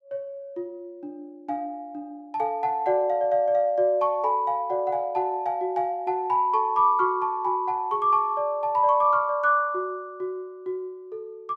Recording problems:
none

